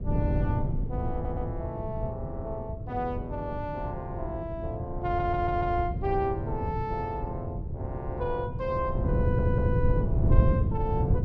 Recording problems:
wind on the microphone; below 150 Hz, SNR -2 dB
stutter; at 1 s, at 5 s and at 9 s

